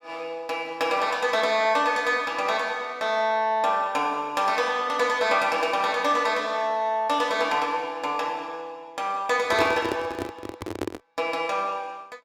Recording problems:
microphone handling noise; from 9.5 to 11 s; peak 0 dB vs average level

